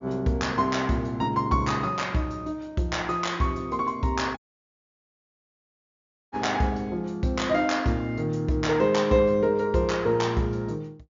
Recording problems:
low-pass filter; nothing above 7.1 kHz
audio cutting out; at 4.5 s for 2 s

